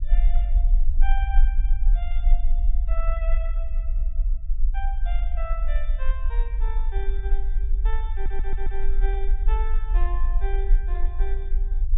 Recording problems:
treble cut off; nothing above 4 kHz
rumble; below 40 Hz, strongest tone 22 Hz, SNR -13 dB
audio stuttering; at 8 s

